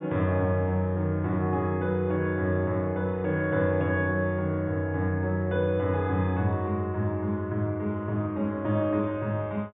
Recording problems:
treble cut off; nothing above 4 kHz

